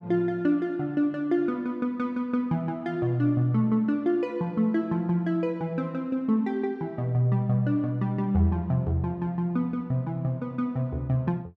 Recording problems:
none

